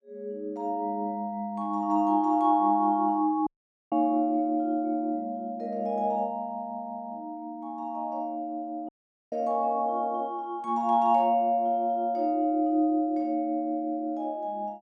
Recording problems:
audio cutting out; at 3.5 s and at 9 s

